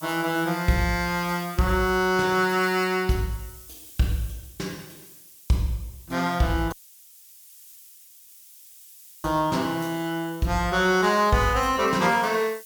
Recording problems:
background hiss; SNR 20 dB
dropout; at 6.5 s for 2.5 s

